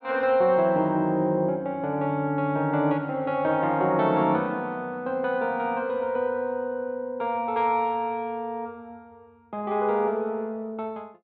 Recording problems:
none

